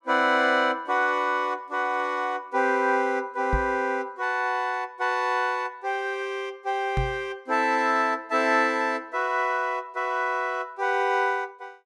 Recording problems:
knock on the microphone; at 3.5 s and at 7 s; peak +1 dB vs average level

